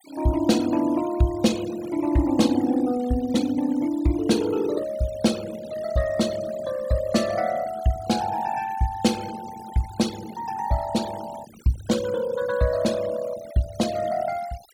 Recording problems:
noise reduction artefacts; signal-to-artefact ratio 17 dB

